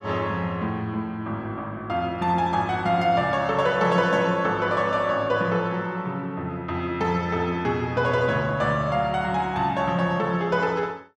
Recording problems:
none

